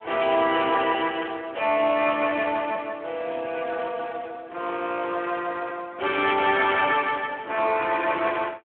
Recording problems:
phone line; 260 Hz to 3.2 kHz, Speex

